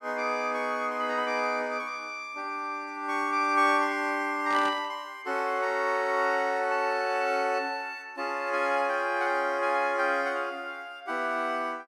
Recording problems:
static burst; at 4.5 s; peak -7 dB vs average level

